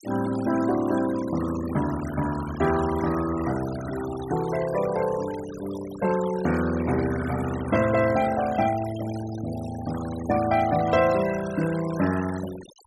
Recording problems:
noise reduction artefacts; signal-to-artefact ratio 14 dB

